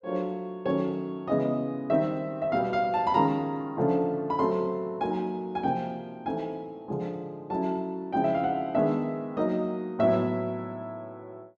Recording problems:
none

